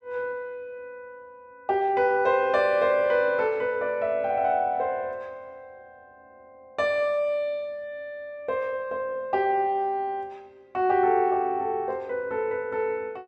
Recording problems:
none

